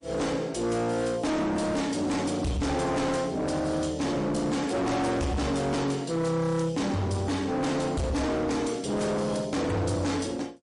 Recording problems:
codec artefacts; MP3, log-spectral distance 3 dB, nothing above 10.4 kHz
distortion; hard clipping, signal-to-distortion ratio 7 dB

